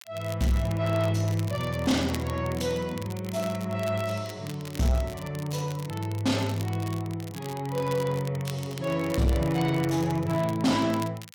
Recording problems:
distorted audio; soft clipping, signal-to-distortion ratio 10 dB
crackling; vinyl, SNR 16 dB

